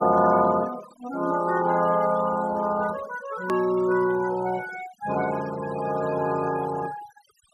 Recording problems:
noise reduction artefacts; signal-to-artefact ratio 17 dB
click at an edit; at 3.5 s

